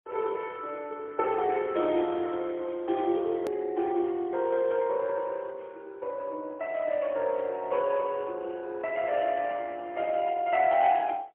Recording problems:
phone line; 300 Hz to 3.3 kHz, AMR-NB, then MP3
edit click; at 3.5 s

